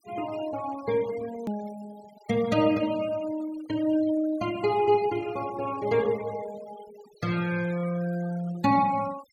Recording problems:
noise reduction artefacts; signal-to-artefact ratio 19 dB
click at an edit; at 1.5 s

